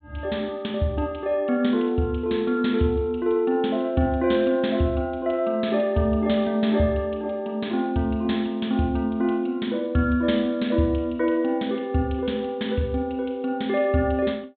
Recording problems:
treble missing; nothing above 4 kHz

